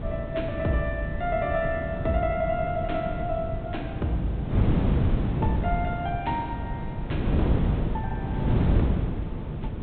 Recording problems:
treble missing; nothing above 4 kHz
electrical hum; 50 Hz, harmonics up to 500 Hz, SNR 17 dB
wind noise; below 230 Hz, SNR -1 dB

